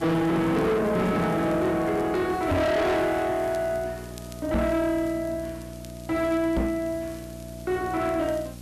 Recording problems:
distortion; soft clipping, signal-to-distortion ratio 7 dB
hum; 60 Hz, harmonics up to 840 Hz, SNR 17 dB
background hiss; slope 0 dB per octave, SNR 24 dB
crackle; vinyl, SNR 29 dB
microphone thump; at 2.5 s, at 4.5 s and at 6.5 s; peak +5 dB vs average level

